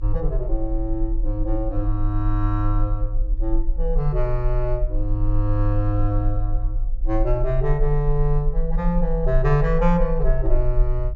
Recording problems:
low-pass filter; nothing above 8 kHz
rumble; below 40 Hz, strongest tone 22 Hz, SNR 1 dB

